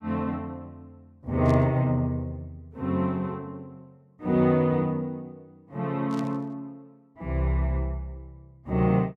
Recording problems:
burst of static; at 1.5 s and at 6 s; peak -13 dB vs average level

